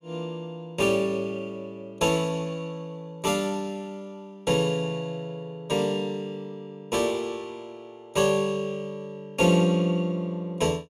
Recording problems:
none

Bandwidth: 14.5 kHz